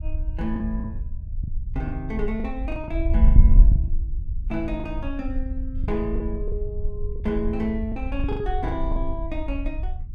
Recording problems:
wind on the microphone; below 60 Hz, SNR -4 dB
lost packets; 10% of the sound replaced, filled with the last packet

